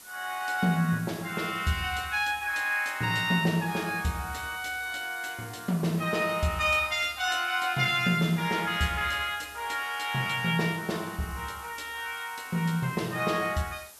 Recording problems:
hiss; slope 0 dB per octave, SNR 18 dB

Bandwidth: 13.5 kHz